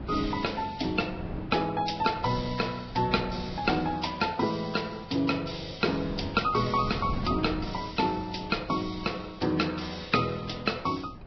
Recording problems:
codec artefacts; Vorbis, log-spectral distance 9 dB, nothing above 5.7 kHz
wind on the microphone; below 280 Hz, SNR 12 dB

